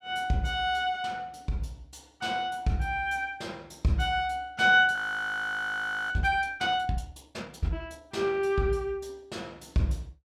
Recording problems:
frozen audio; at 5 s for 1 s

